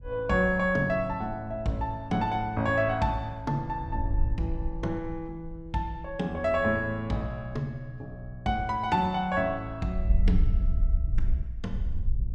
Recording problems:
wind noise; below 64 Hz, SNR 2 dB

